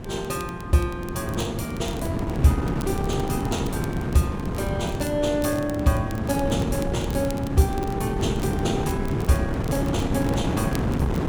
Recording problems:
wind noise; below 350 Hz, SNR 1 dB
crackle; vinyl, SNR 18 dB

